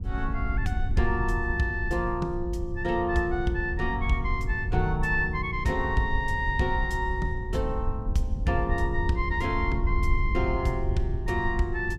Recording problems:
wind on the microphone; below 80 Hz, SNR 3 dB

